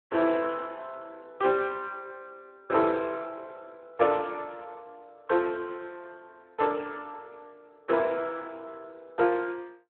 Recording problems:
telephone audio; 300 Hz to 3 kHz, Speex

